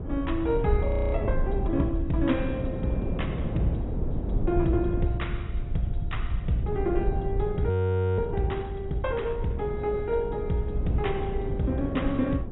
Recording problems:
treble cut off; nothing above 3.8 kHz
lossy compression; MP2, log-spectral distance 2 dB
low-frequency rumble; below 74 Hz, SNR 6 dB
wind noise; below 300 Hz, SNR 6 dB
frozen audio; at 1 s and at 7.5 s

